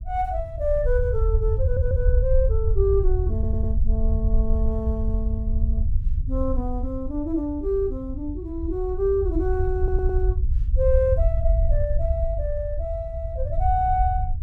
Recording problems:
rumble; below 70 Hz, SNR -1 dB
audio stuttering; at 1.5 s, at 3.5 s and at 10 s

